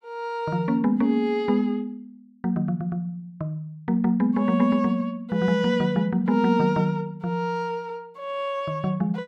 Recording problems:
none

